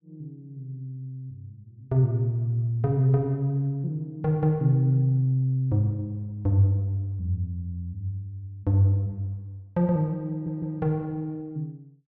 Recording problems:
audio stuttering; at 10 s

